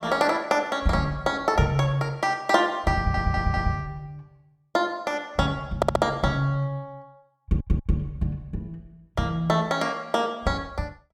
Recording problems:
stutter; at 3 s, at 6 s and at 7.5 s

